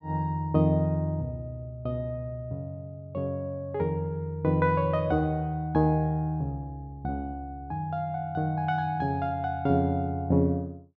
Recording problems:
none

